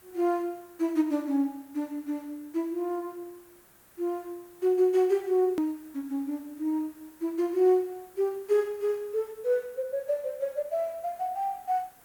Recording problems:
background hiss; SNR 26 dB
edit click; at 5.5 s

